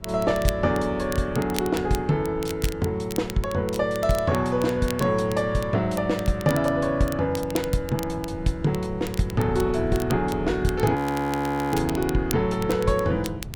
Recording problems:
wind noise; below 160 Hz, SNR 15 dB
crackle; vinyl, SNR 16 dB
frozen audio; at 11 s for 1 s

